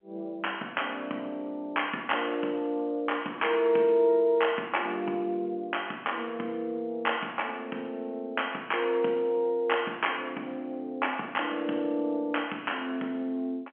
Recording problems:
phone line; 220 Hz to 3.3 kHz, G.711

